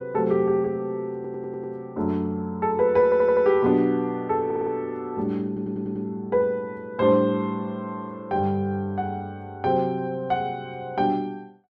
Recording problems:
stutter; 4 times, first at 1 s

